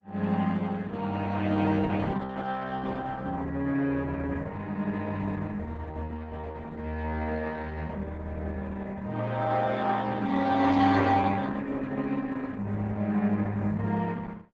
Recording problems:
lossy codec; Opus, log-spectral distance 3 dB, nothing above 7.6 kHz

